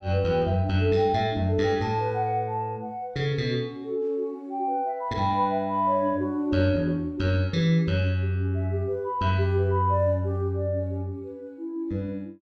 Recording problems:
none

